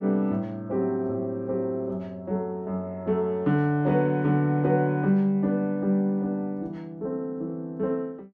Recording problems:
none

